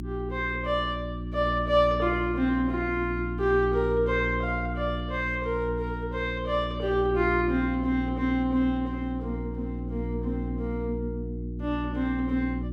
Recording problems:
mains hum; 60 Hz, harmonics up to 360 Hz, SNR 6 dB

